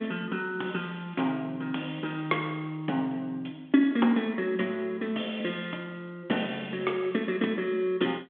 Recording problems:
telephone audio; 220 Hz to 3.4 kHz, G.726

